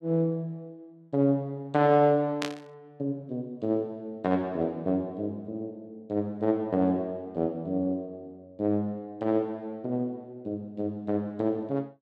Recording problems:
static burst; at 2.5 s; peak 0 dB vs average level

